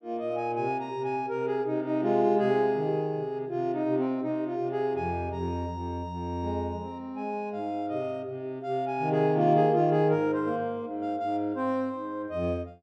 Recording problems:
none

